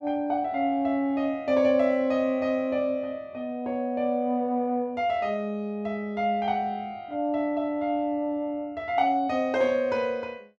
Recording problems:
none

